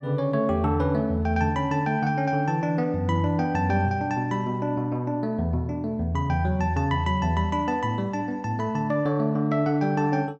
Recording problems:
none

